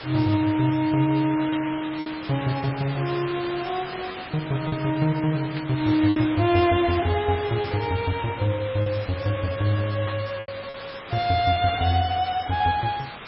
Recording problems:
lossy compression; MP3, log-spectral distance 10 dB, nothing above 5.2 kHz
background hiss; SNR 12 dB
lost packets; 3% of the sound replaced, filled with repeated pitch periods
burst of static; at 1.5 s, at 5.5 s and at 10 s; peak -6 dB vs average level

